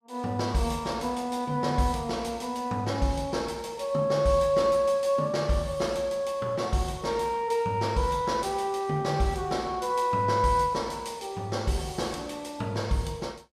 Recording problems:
none

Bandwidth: 14.5 kHz